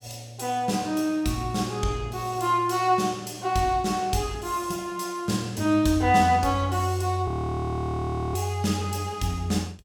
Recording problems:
audio freezing; at 7.5 s for 1 s

